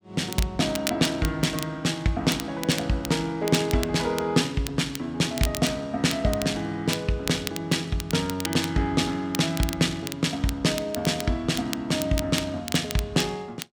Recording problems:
crackle; vinyl, SNR 11 dB

